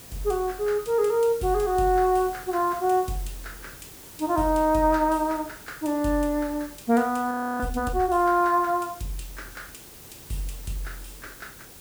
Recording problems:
background hiss; SNR 18 dB
frozen audio; at 7.5 s

